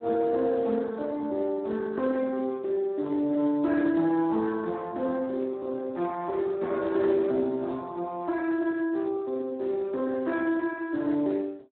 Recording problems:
telephone audio; 130 Hz to 2.1 kHz, Speex

